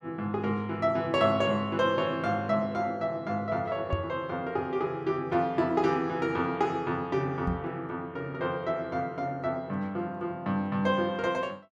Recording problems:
knock on the microphone; at 4 s and at 7.5 s; peak +3 dB vs average level

